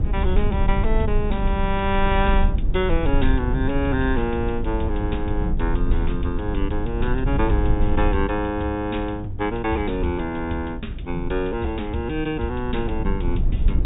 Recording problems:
low-pass filter; nothing above 4 kHz
hum; 60 Hz, harmonics up to 360 Hz, SNR 18 dB
rumble; below 68 Hz, SNR 2 dB

